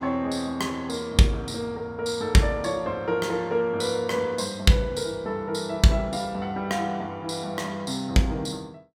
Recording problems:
none

